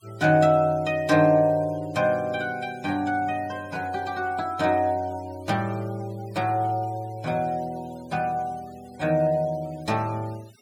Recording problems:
noise reduction artefacts; signal-to-artefact ratio 25 dB

